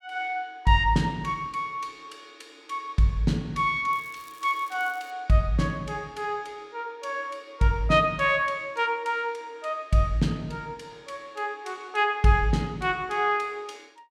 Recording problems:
crackling; from 4 to 5 s; loose cable, SNR 26 dB

